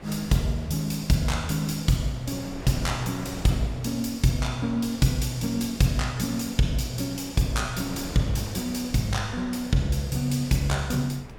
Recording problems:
wind on the microphone; below 670 Hz, SNR 15 dB

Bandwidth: 17 kHz